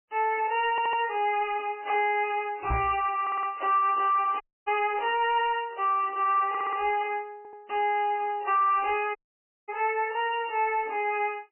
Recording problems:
codec artefacts; MP3, log-spectral distance 3 dB, nothing above 2.5 kHz
distorted audio; soft clipping, signal-to-distortion ratio 10 dB
stutter; 4 times, first at 0.5 s
microphone thump; at 2.5 s; peak +2 dB vs average level
audio cutting out; at 4.5 s and at 9 s for 0.5 s

